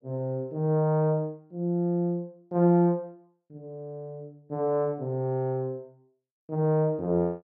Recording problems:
none

